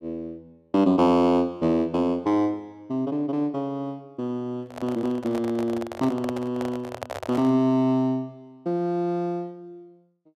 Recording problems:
handling noise; from 4.5 to 7.5 s; peak -4 dB vs average level

